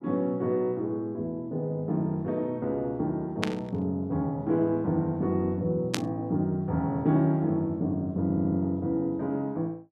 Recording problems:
burst of static; at 3.5 s and at 6 s; peak +4 dB vs average level
audio stuttering; at 8 s

